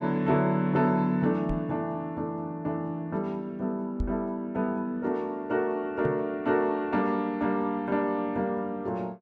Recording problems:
knock on the microphone; at 1.5 s, at 4 s and at 6 s; peak +1 dB vs average level

